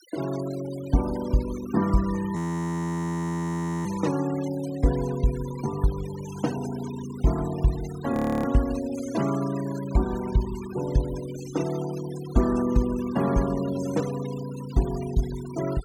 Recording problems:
noise reduction artefacts; signal-to-artefact ratio 15 dB
audio freezing; at 2.5 s for 1.5 s and at 8 s

